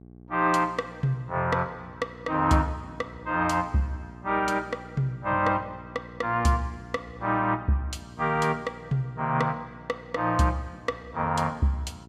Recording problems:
electrical hum; 60 Hz, harmonics up to 840 Hz, SNR 19 dB

